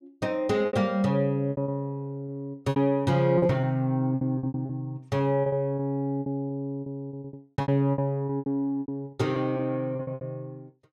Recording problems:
packet loss; 15% of the sound replaced, filled with repeated pitch periods

